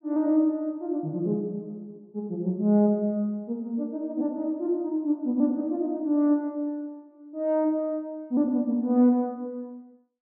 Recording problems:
low-pass filter; nothing above 4.4 kHz

